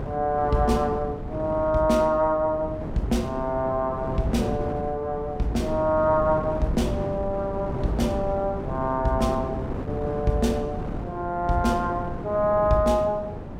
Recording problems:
wind on the microphone; below 370 Hz, SNR 8 dB

